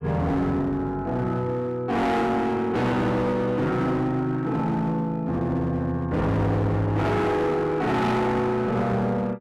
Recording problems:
distorted audio; hard clipping, uneven, signal-to-distortion ratio 7 dB

